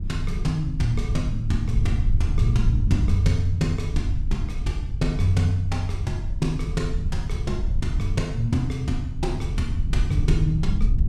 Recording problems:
rumble; below 84 Hz, SNR 1 dB

